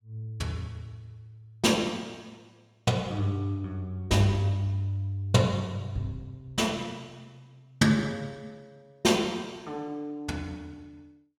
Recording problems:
none

